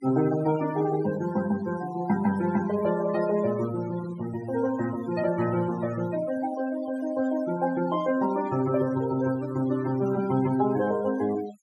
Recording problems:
noise reduction artefacts; signal-to-artefact ratio 15 dB

